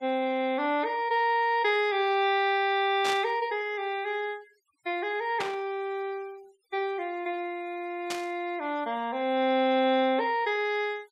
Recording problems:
noise reduction artefacts; signal-to-artefact ratio 27 dB
burst of static; at 3 s, at 5.5 s and at 8 s; peak -1 dB vs average level

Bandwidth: 14 kHz